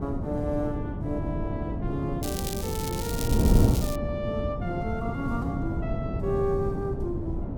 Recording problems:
electrical hum; 60 Hz, harmonics up to 1.5 kHz, SNR 26 dB
wind noise; below 230 Hz, SNR -2 dB
crackling; from 2 to 4 s; loose cable, SNR 4 dB

